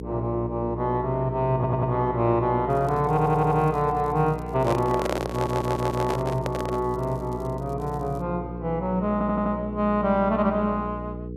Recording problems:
mains hum; 60 Hz, harmonics up to 480 Hz, SNR 10 dB
audio stuttering; 4 times, first at 1.5 s
crackle; from 2.5 to 8 s; loose cable, SNR 29 dB
handling noise; from 4.5 to 7 s; peak +1 dB vs average level

